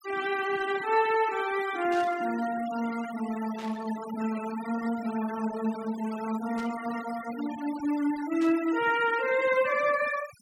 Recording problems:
denoising artefacts; signal-to-artefact ratio 15 dB
burst of static; 4 times, first at 2 s; peak -12 dB vs average level

